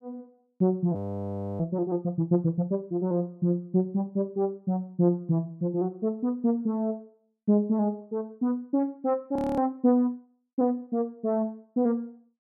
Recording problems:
frozen audio; at 1 s for 0.5 s and at 9.5 s

